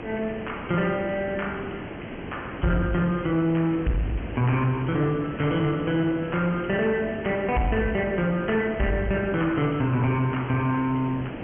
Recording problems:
low-pass filter; nothing above 3.1 kHz
distortion; soft clipping, signal-to-distortion ratio 12 dB
background hiss; SNR 11 dB

